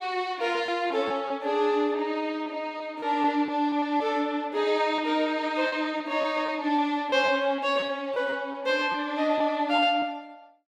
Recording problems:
lost packets; 6% of the sound replaced, filled with repeated pitch periods

